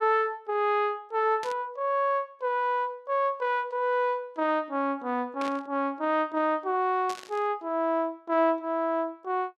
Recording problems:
static burst; at 1.5 s, at 5.5 s and at 7 s; peak -7 dB vs average level

